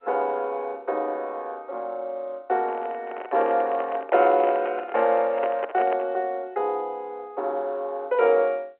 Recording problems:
phone line; 340 Hz to 3.5 kHz, G.711
microphone handling noise; from 2.5 to 6 s; peak -2 dB vs average level

